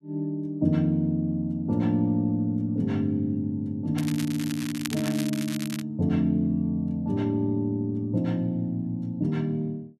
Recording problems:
crackling; from 4 to 6 s; loose cable, SNR 11 dB

